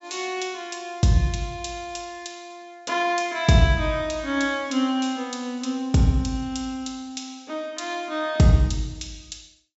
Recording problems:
treble missing; nothing above 8 kHz

